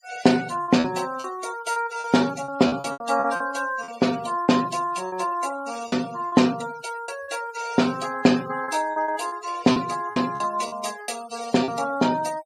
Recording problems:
denoising artefacts; signal-to-artefact ratio 16 dB
lost packets; 9% of the sound replaced, filled with repeated pitch periods

